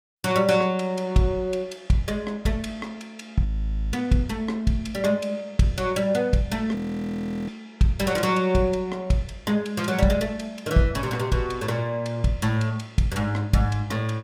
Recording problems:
frozen audio; at 3.5 s and at 7 s for 0.5 s

